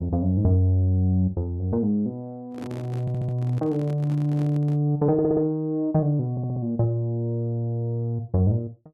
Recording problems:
microphone handling noise; from 2.5 to 5 s; peak -10 dB vs average level
stutter; at 3 s, at 5 s and at 6.5 s

